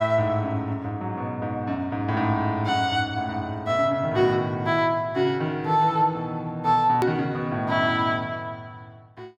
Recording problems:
edit click; at 7 s

